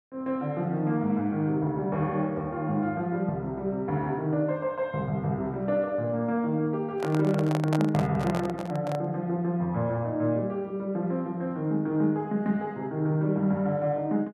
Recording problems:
handling noise; from 7 to 9 s; peak 0 dB vs average level

